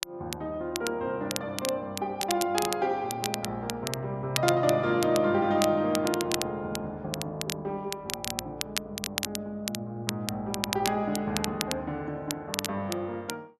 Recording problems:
crackle; vinyl, SNR 5 dB

